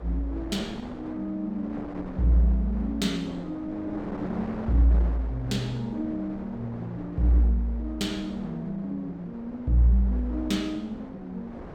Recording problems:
mains hum; 60 Hz, harmonics up to 480 Hz, SNR 32 dB
wind noise; below 690 Hz, SNR 14 dB

